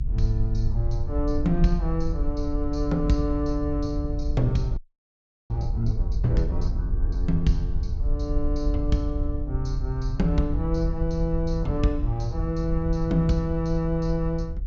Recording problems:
low-pass filter; nothing above 8 kHz
rumble; below 46 Hz, SNR 5 dB
wind noise; below 84 Hz, SNR 7 dB
frozen audio; at 5 s for 0.5 s

